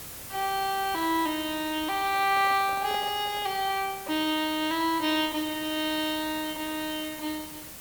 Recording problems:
hiss; slope -2 dB per octave, SNR 12 dB
handling noise; from 2 to 3.5 s; peak -9 dB vs average level

